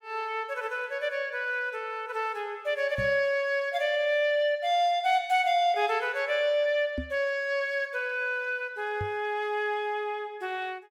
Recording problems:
knock on the microphone; at 3 s, at 7 s and at 9 s; peak -2 dB vs average level

